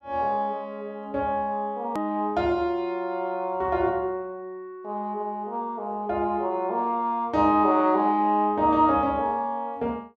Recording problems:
edit click; at 2 s

